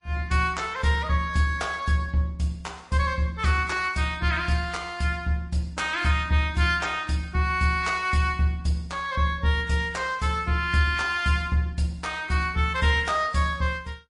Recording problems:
lossy compression; Vorbis, then MP3, log-spectral distance 2 dB, nothing above 10.4 kHz

